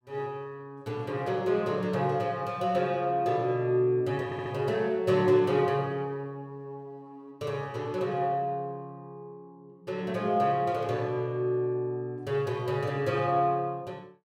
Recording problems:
audio stuttering; at 4.5 s

